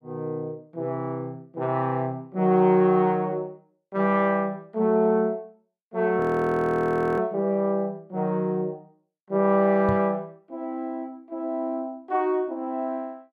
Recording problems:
audio freezing; at 6 s for 1 s
microphone bump; at 10 s; peak -1 dB vs average level

